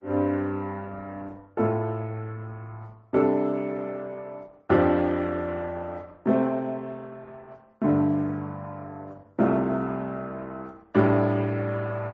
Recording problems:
lossy compression; Opus, then MP3, log-spectral distance 2 dB, nothing above 8 kHz

